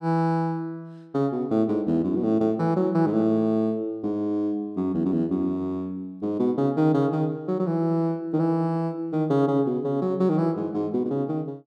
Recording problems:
none

